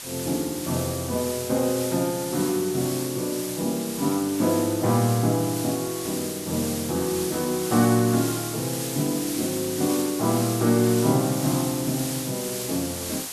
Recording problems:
hiss; slope 0 dB per octave, SNR 7 dB

